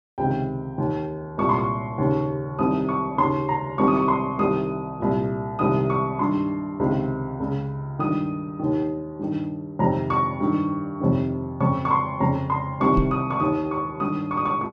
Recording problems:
knock on the microphone; at 13 s; peak +4 dB vs average level

